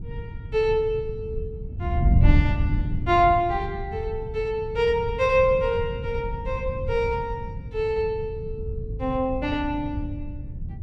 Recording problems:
wind noise; below 120 Hz, SNR 4 dB

